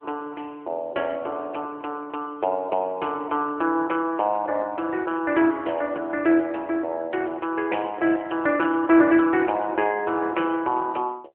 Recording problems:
telephone audio; 260 Hz to 3.1 kHz, AMR-NB

